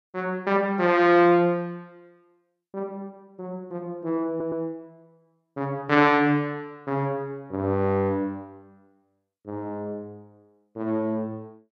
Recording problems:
audio stuttering; at 4.5 s

